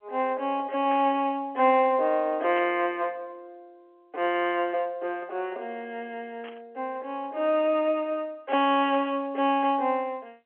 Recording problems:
telephone audio; 260 Hz to 3.3 kHz, G.711
burst of static; 4 times, first at 1 s; peak -10 dB vs average level

